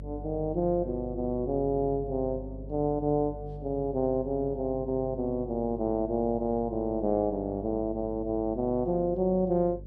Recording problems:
electrical hum; 50 Hz, harmonics up to 600 Hz, SNR 14 dB

